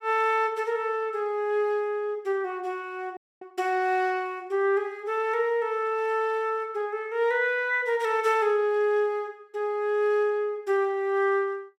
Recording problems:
audio freezing; at 3 s

